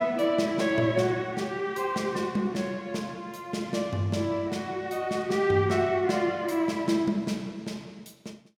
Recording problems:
none

